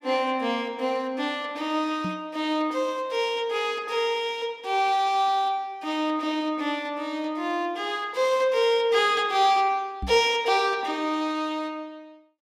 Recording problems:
knock on the microphone; at 2 s and at 10 s; peak -3 dB vs average level

